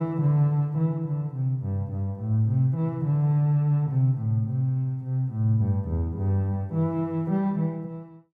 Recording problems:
none

